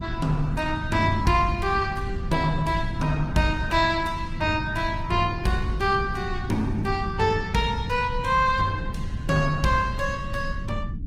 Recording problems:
codec artefacts; Opus, log-spectral distance 3 dB
rumble; below 130 Hz, SNR 8 dB

